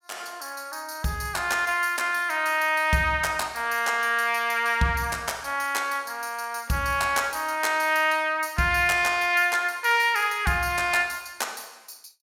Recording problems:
none

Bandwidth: 17 kHz